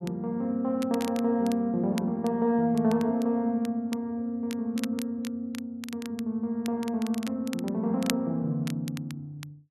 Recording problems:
crackle; vinyl, SNR 16 dB

